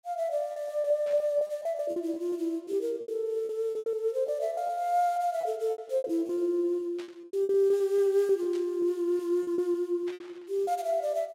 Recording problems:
packet loss; 14% of the sound replaced, filled with repeated pitch periods
burst of static; 4 times, first at 1 s; peak -14 dB vs average level

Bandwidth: 16 kHz